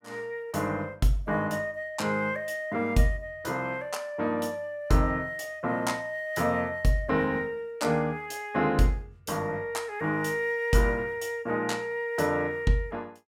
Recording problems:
none

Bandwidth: 16.5 kHz